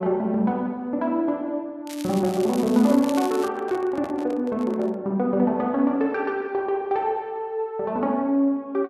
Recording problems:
crackling; from 2 to 3.5 s; loose cable, SNR 16 dB
handling noise; from 3.5 to 5 s; peak -10 dB vs average level

